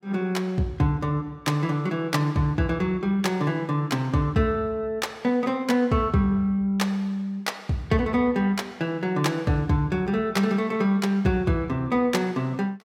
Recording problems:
none

